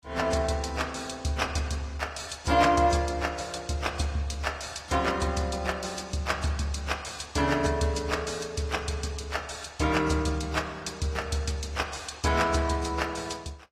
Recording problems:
codec artefacts; AAC, then AAC, log-spectral distance 4 dB

